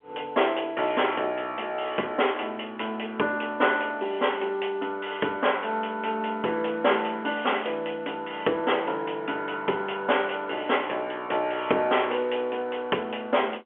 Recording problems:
phone line; 280 Hz to 3.3 kHz, G.711

